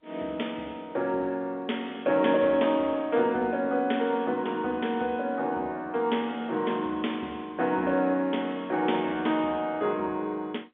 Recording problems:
phone line; 220 Hz to 3.4 kHz, G.711

